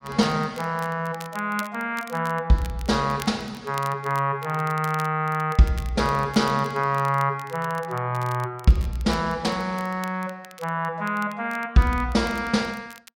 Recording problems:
crackling; vinyl, SNR 21 dB

